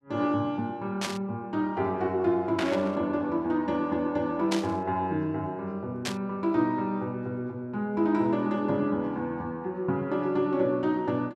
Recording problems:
static burst; 4 times, first at 1 s; peak +1 dB vs average level

